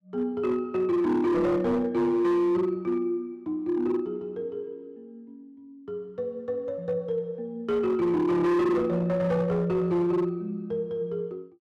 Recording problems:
distortion; hard clipping, signal-to-distortion ratio 10 dB

